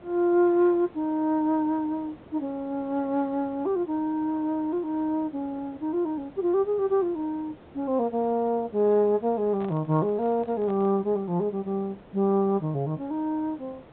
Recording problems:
low-pass filter; nothing above 4 kHz
background hiss; SNR 23 dB
handling noise; from 9.5 to 11 s; peak -11 dB vs average level

